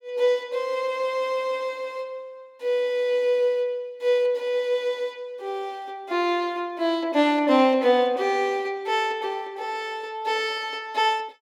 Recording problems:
none

